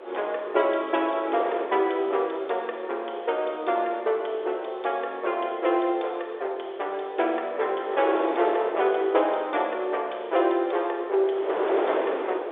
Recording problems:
telephone audio; 320 Hz to 3.7 kHz, G.711
wind noise; below 830 Hz, SNR 7 dB

